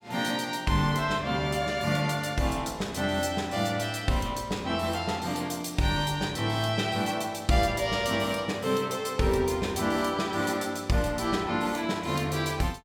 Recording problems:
none

